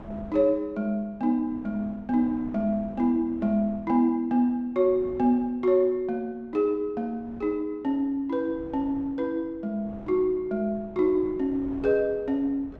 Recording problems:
wind on the microphone; below 450 Hz, SNR 21 dB

